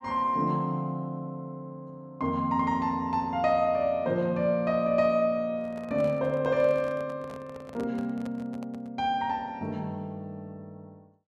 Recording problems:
microphone handling noise; from 5.5 to 9 s; peak -10 dB vs average level

